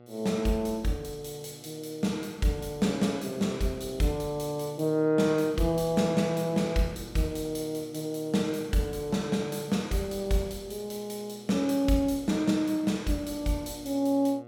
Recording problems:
hum; 60 Hz, harmonics up to 1.4 kHz, SNR 21 dB

